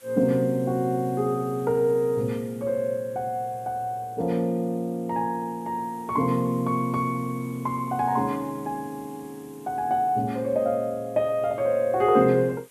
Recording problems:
hiss; slope -1 dB per octave, SNR 27 dB

